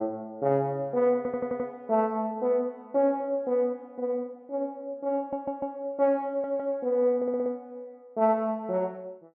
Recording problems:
audio stuttering; 4 times, first at 1 s

